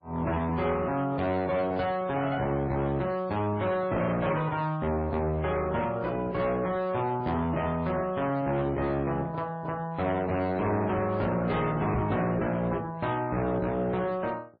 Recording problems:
lossy compression; MP3, then MP3, log-spectral distance 2 dB, nothing above 4.2 kHz
distortion; hard clipping, signal-to-distortion ratio 10 dB
knock on the microphone; at 12 s; peak +3 dB vs average level

